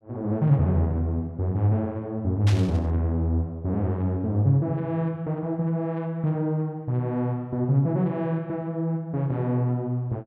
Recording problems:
burst of static; at 2.5 s; peak -4 dB vs average level

